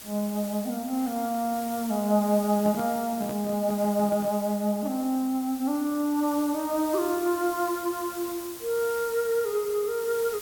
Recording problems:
background hiss; slope -1 dB per octave, SNR 13 dB
handling noise; from 2.5 to 4.5 s; peak -7 dB vs average level

